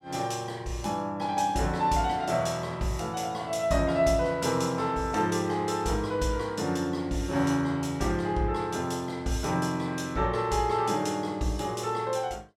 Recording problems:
none

